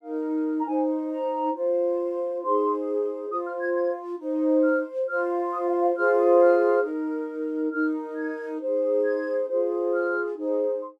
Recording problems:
none

